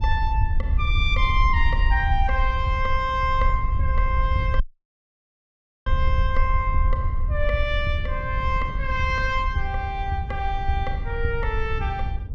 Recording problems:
rumble; below 62 Hz, SNR 2 dB
wind noise; below 88 Hz, SNR 7 dB
dropout; at 4.5 s for 1.5 s

